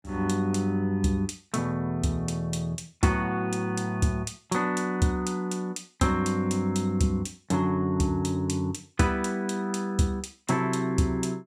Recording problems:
none

